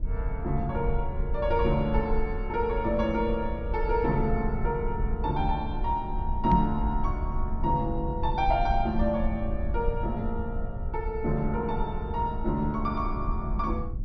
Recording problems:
treble cut off; nothing above 5.9 kHz
rumble; below 66 Hz, SNR 4 dB
knock on the microphone; at 6.5 s; peak +9 dB vs average level

